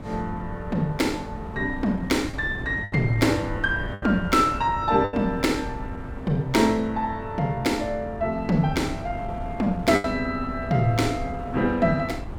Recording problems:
wind on the microphone; below 240 Hz, SNR 11 dB
lost packets; 3% of the sound replaced, filled with the last packet

